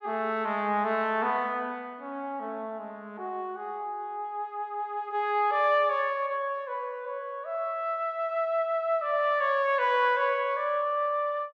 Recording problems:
none

